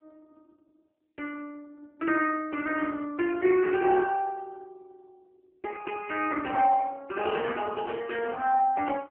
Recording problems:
telephone audio; 260 Hz to 3.1 kHz, AMR-NB

